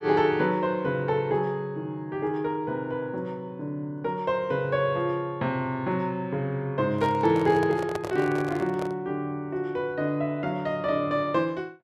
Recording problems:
microphone handling noise; from 7 to 9 s; peak -2 dB vs average level

